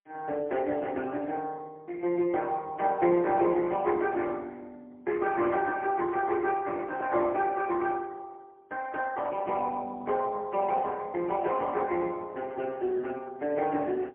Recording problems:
telephone audio; 220 Hz to 3.7 kHz, AMR-NB, then MP3

